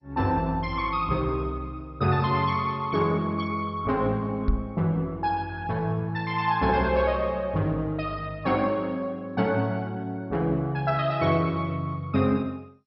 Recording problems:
codec artefacts; MP2, log-spectral distance 2 dB, nothing above 5.5 kHz
knock on the microphone; at 4.5 s; peak +5 dB vs average level

